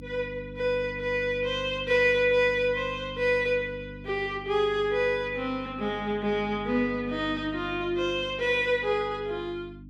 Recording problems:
electrical hum; 50 Hz, harmonics up to 300 Hz, SNR 16 dB

